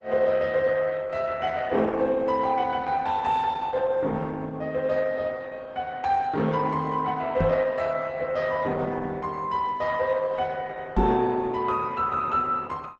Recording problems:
lossy compression; Opus, log-spectral distance 3 dB, nothing above 8 kHz
microphone bump; at 7.5 s and at 11 s; peak +3 dB vs average level

